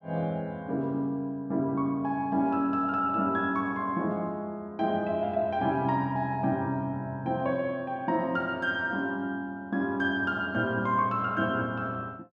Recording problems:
none

